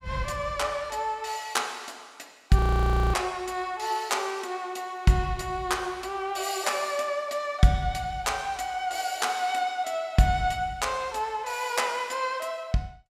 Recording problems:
frozen audio; at 2.5 s for 0.5 s

